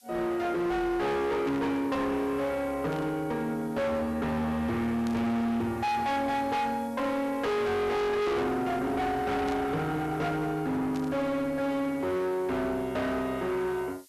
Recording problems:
distortion; hard clipping, uneven, signal-to-distortion ratio 7 dB
hiss; slope +4 dB per octave, SNR 27 dB
burst of static; 5 times, first at 1.5 s; peak -11 dB vs average level

